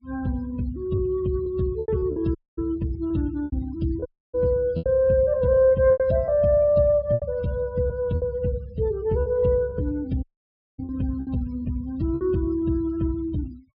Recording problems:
treble cut off; nothing above 5.5 kHz
denoising artefacts; signal-to-artefact ratio 25 dB
lost packets; 7% of the sound replaced, filled with repeated pitch periods
dropout; at 2.5 s, at 4 s and at 10 s for 0.5 s

